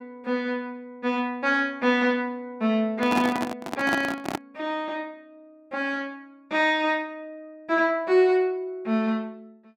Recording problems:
handling noise; from 3 to 4.5 s; peak +2 dB vs average level

